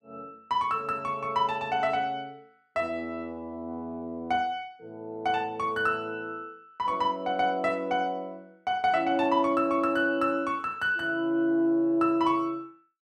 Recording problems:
none

